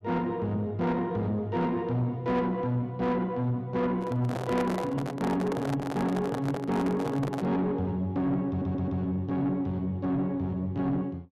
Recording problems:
distorted audio; soft clipping, signal-to-distortion ratio 11 dB
handling noise; from 4 to 7.5 s; peak 0 dB vs average level
audio stuttering; at 8.5 s

